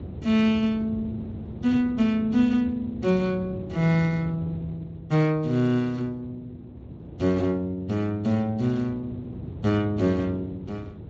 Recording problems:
lossy codec; Speex, log-spectral distance 2 dB
rumble; below 300 Hz, SNR 13 dB

